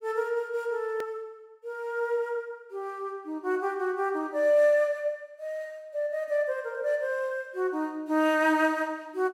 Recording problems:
edit click; at 1 s

